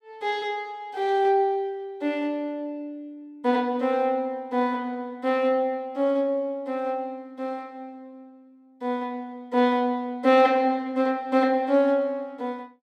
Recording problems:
none

